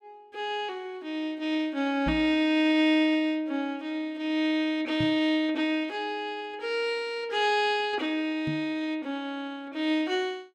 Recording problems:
knock on the microphone; at 2 s, at 5 s and at 8.5 s; peak -2 dB vs average level

